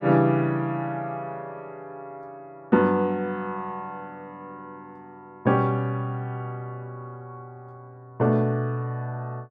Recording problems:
none

